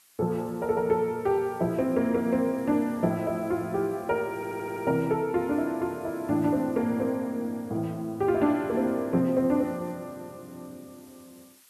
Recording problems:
hiss; slope +2 dB per octave, SNR 27 dB
stutter; at 4.5 s

